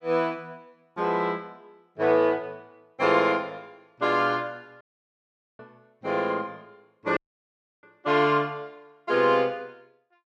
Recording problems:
audio cutting out; at 5 s for 1 s and at 7 s for 0.5 s

